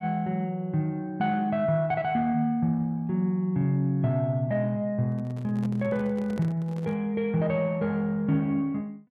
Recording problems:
handling noise; from 5 to 7 s; peak -8 dB vs average level

